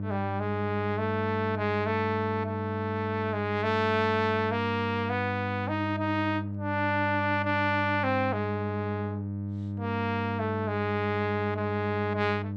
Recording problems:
hum; 50 Hz, harmonics up to 600 Hz, SNR 5 dB

